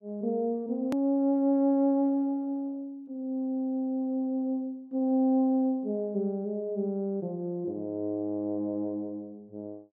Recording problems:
edit click; at 1 s

